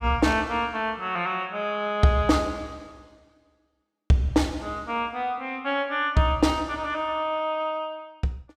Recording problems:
none

